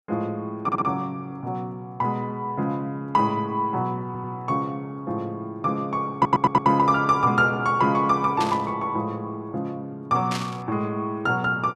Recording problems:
audio stuttering; at 0.5 s, at 4 s and at 6 s
burst of static; at 8.5 s and at 10 s; peak -2 dB vs average level

